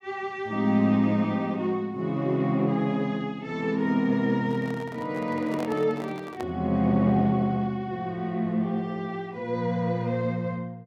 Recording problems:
microphone handling noise; from 4.5 to 6.5 s; peak -6 dB vs average level

